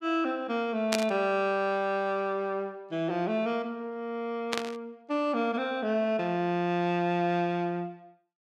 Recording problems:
burst of static; at 1 s and at 4.5 s; peak +4 dB vs average level

